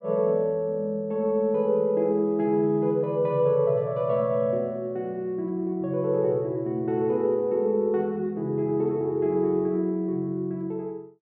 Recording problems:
none

